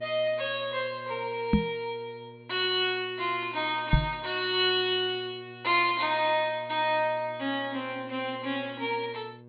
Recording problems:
treble missing; nothing above 4.4 kHz
mains hum; 60 Hz, harmonics up to 1.1 kHz, SNR 21 dB
knock on the microphone; at 1.5 s and at 4 s; peak +9 dB vs average level

